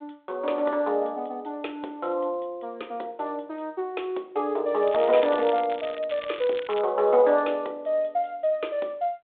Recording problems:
phone line; 320 Hz to 3.7 kHz, G.726
crackling; from 5 to 7 s; loose cable, SNR 15 dB

